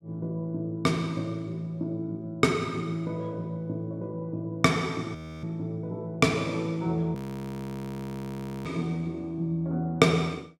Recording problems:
frozen audio; at 5 s and at 7 s for 1.5 s

